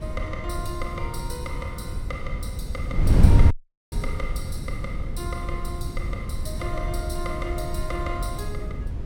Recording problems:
low-frequency rumble; below 84 Hz, SNR 8 dB
wind noise; below 100 Hz, SNR -7 dB
dropout; at 3.5 s

